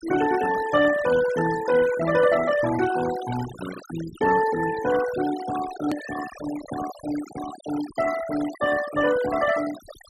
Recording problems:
denoising artefacts; signal-to-artefact ratio 12 dB
hard cut with a click; at 6 s

